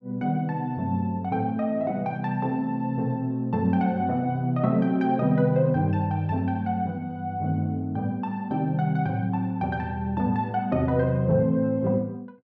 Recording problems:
none

